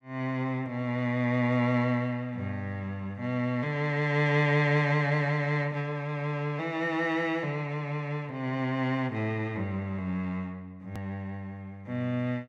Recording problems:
click at an edit; at 11 s

